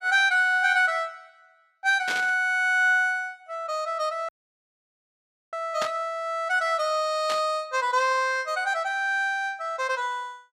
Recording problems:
burst of static; at 2 s, at 6 s and at 7.5 s; peak -3 dB vs average level
audio cutting out; at 4.5 s for 1 s

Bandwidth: 15 kHz